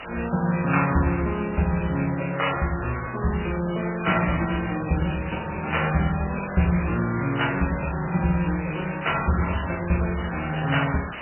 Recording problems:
codec artefacts; MP3, log-spectral distance 19 dB, nothing above 2.9 kHz
hiss; SNR 12 dB

